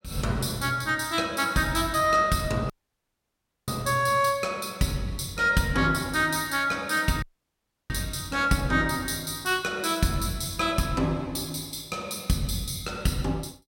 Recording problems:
dropout; at 2.5 s for 1 s and at 7 s for 0.5 s

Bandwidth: 16.5 kHz